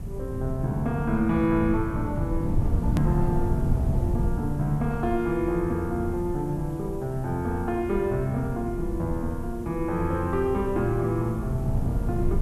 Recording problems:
background hiss; SNR 27 dB
rumble; below 150 Hz, SNR 4 dB
click at an edit; at 3 s

